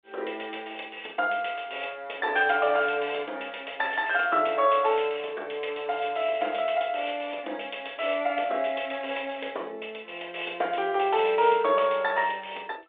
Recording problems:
telephone audio; 320 Hz to 3.6 kHz, G.726

